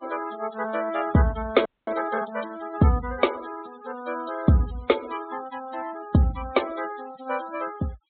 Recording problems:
low-pass filter; nothing above 4 kHz
denoising artefacts; signal-to-artefact ratio 19 dB
audio freezing; at 1.5 s

